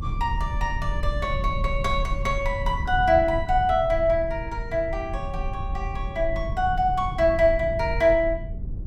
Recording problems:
rumble; below 88 Hz, SNR 7 dB

